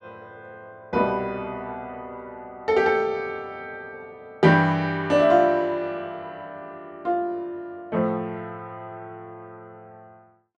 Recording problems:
none

